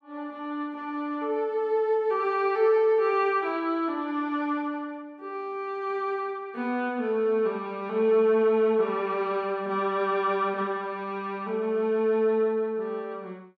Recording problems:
none

